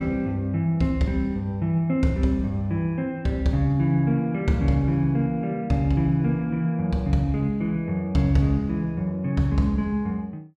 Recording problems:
none

